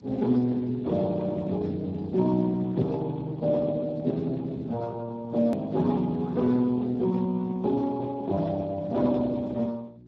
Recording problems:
lossy compression; Speex, then Speex, log-spectral distance 3 dB
electrical hum; 60 Hz, harmonics up to 360 Hz, SNR 23 dB
edit click; at 5.5 s

